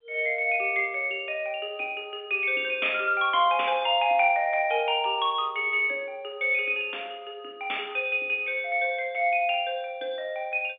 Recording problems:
telephone audio; 260 Hz to 3.6 kHz, G.711

